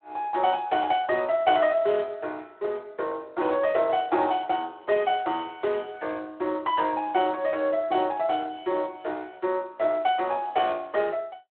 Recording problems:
telephone audio; 280 Hz to 3.3 kHz, Speex

